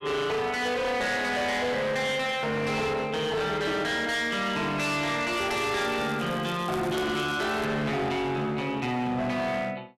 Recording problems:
distortion; hard clipping, signal-to-distortion ratio 8 dB
crackling; from 5.5 to 7.5 s; loose cable, SNR 21 dB

